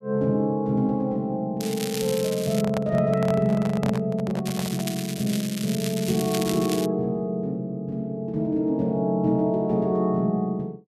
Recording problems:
crackle; from 1.5 to 2.5 s and from 4.5 to 7 s; loose cable, SNR 10 dB
microphone handling noise; from 2.5 to 5 s; peak -2 dB vs average level

